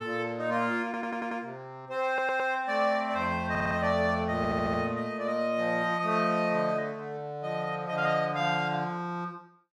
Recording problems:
stutter; 4 times, first at 1 s

